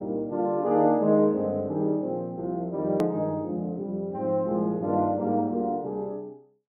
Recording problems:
hard cut with a click; at 3 s

